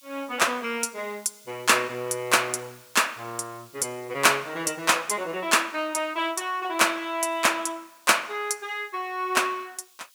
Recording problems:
background hiss; SNR 27 dB

